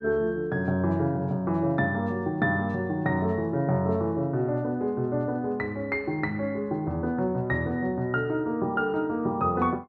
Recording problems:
none

